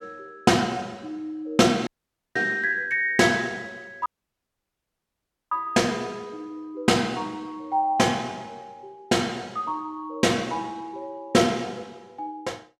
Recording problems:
audio cutting out; at 2 s and at 4 s for 1.5 s

